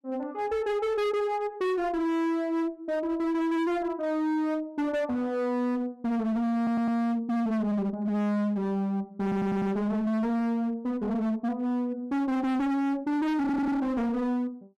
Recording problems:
distortion; hard clipping, signal-to-distortion ratio 6 dB
audio stuttering; at 6.5 s, at 9 s and at 13 s

